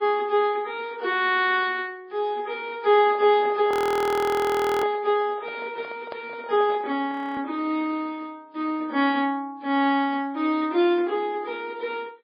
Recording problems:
lossy codec; MP3, log-spectral distance 2 dB, nothing above 20.1 kHz
microphone handling noise; from 3 to 7 s; peak -8 dB vs average level
audio freezing; at 3.5 s for 1 s and at 7 s

